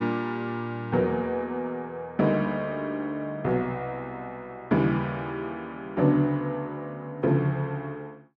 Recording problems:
none

